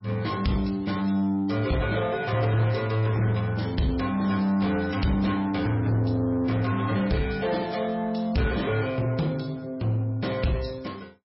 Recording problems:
codec artefacts; MP3, log-spectral distance 4 dB, nothing above 5.5 kHz
distorted audio; soft clipping, signal-to-distortion ratio 11 dB

